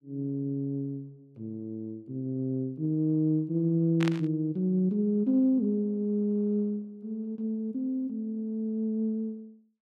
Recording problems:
burst of static; at 4 s; peak -2 dB vs average level

